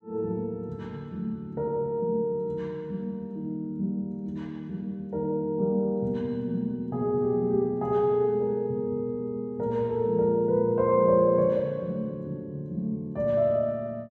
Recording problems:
none

